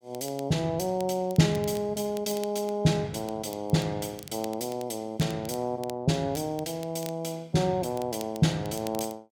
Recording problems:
crackle; vinyl, SNR 18 dB

